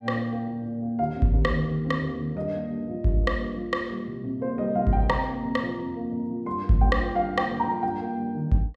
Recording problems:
none

